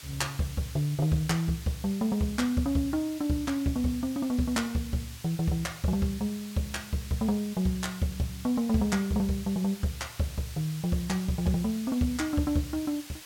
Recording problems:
hiss; slope +2 dB per octave, SNR 15 dB

